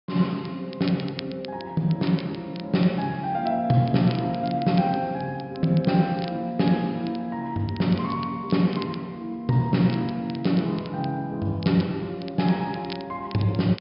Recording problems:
low-pass filter; nothing above 5.5 kHz
crackling; vinyl, SNR 20 dB

